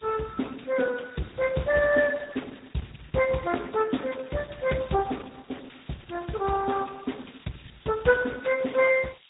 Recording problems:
treble cut off; nothing above 3.8 kHz
codec artefacts; Speex, then Opus, log-spectral distance 15 dB
hiss; SNR 27 dB

